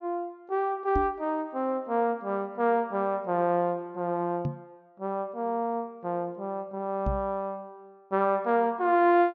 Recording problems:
treble cut off; nothing above 6.7 kHz
knock on the microphone; at 1 s, at 4.5 s and at 7 s; peak +2 dB vs average level

